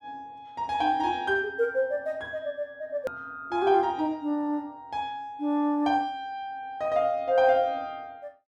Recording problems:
edit click; at 3 s

